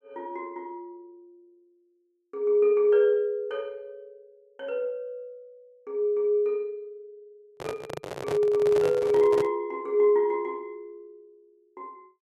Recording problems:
microphone handling noise; from 7.5 to 9.5 s; peak -4 dB vs average level

